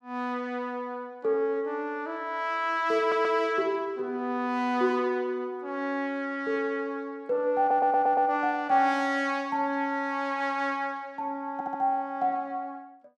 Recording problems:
audio stuttering; at 3 s, at 7.5 s and at 12 s

